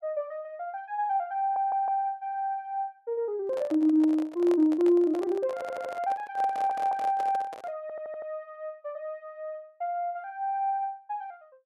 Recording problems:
stutter; 4 times, first at 1.5 s
handling noise; from 3.5 to 7.5 s; peak -5 dB vs average level

